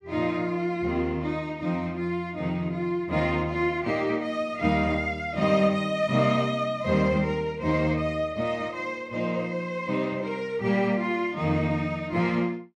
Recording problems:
none

